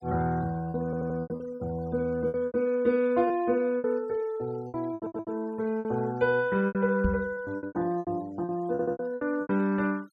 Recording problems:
denoising artefacts; signal-to-artefact ratio 26 dB
lost packets; 13% of the sound replaced, filled with repeated pitch periods
audio stuttering; at 1 s, at 5 s and at 8.5 s
microphone bump; at 7 s; peak +3 dB vs average level

